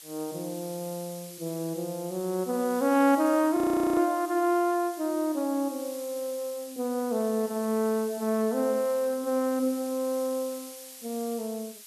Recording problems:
background hiss; slope +4 dB per octave, SNR 15 dB
frozen audio; at 3.5 s

